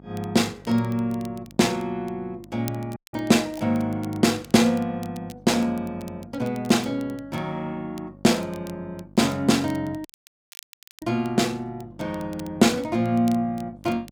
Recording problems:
hum; 50 Hz, harmonics up to 950 Hz, SNR 23 dB
crackle; vinyl, SNR 25 dB
dropout; at 3 s and at 10 s for 1 s

